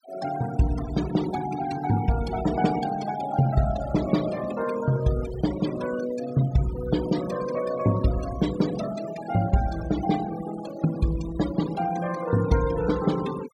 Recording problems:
denoising artefacts; signal-to-artefact ratio 13 dB

